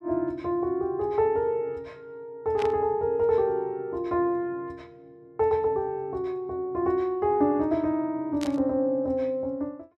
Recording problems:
static burst; at 2.5 s and at 8.5 s; peak -6 dB vs average level

